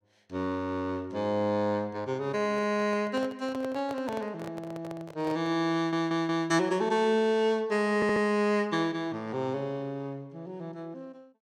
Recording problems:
handling noise; from 2.5 to 5.5 s; peak -6 dB vs average level
audio stuttering; at 6 s and at 8 s

